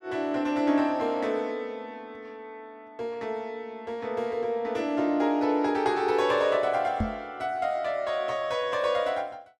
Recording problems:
knock on the microphone; at 7 s; peak +2 dB vs average level

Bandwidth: 13.5 kHz